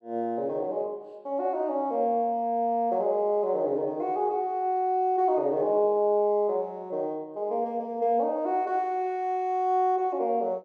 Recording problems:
none

